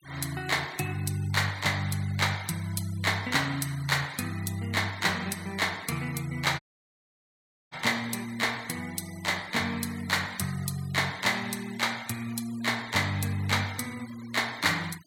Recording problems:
denoising artefacts; signal-to-artefact ratio 18 dB
audio cutting out; at 6.5 s for 1 s

